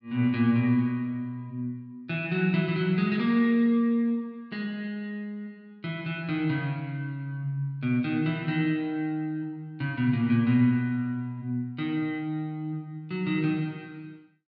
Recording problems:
none

